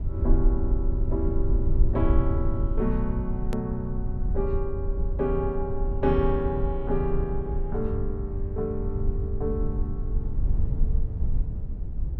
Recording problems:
low-frequency rumble; below 68 Hz, SNR -1 dB
hard cut with a click; at 3.5 s

